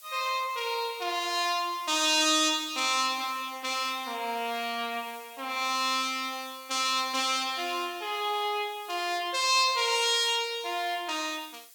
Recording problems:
background hiss; slope +3 dB per octave, SNR 21 dB

